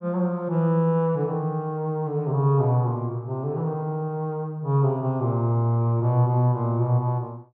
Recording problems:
none

